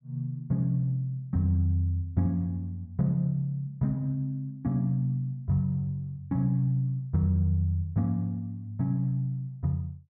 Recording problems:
treble missing; nothing above 7 kHz

